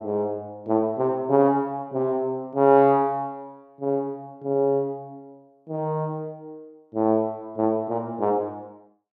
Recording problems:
none

